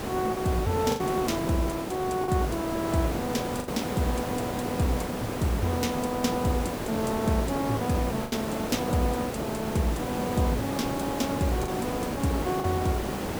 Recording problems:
background hiss; slope -7 dB per octave, SNR 2 dB
lost packets; 3% of the sound replaced, filled with the last packet

